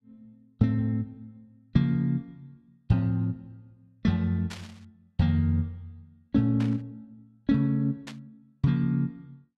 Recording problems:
burst of static; at 4.5 s, at 6.5 s and at 8 s; peak -9 dB vs average level

